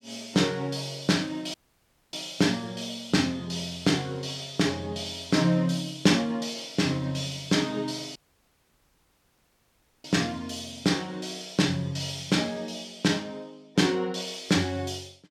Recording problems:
audio cutting out; at 1.5 s for 0.5 s and at 8 s for 2 s

